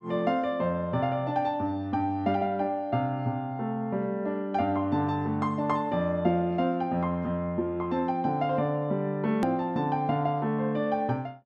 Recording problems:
hard cut with a click; at 9.5 s

